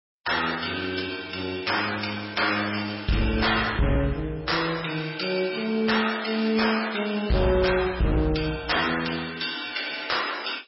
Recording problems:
codec artefacts; MP3, log-spectral distance 9 dB, nothing above 5.5 kHz
distorted audio; hard clipping, signal-to-distortion ratio 10 dB

